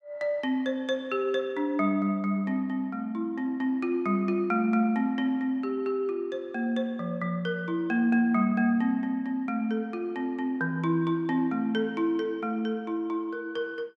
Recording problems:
none

